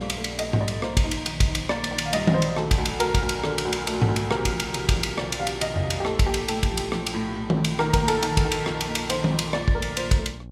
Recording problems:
electrical hum; 60 Hz, harmonics up to 600 Hz, SNR 16 dB

